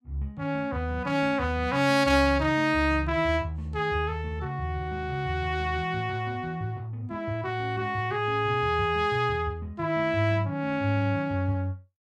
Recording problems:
none

